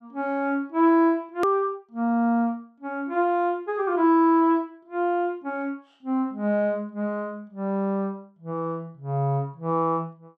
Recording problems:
edit click; at 1.5 s

